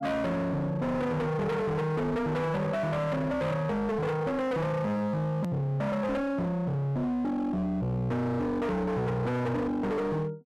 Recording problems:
distortion; hard clipping, signal-to-distortion ratio 7 dB
hard cut with a click; at 5.5 s

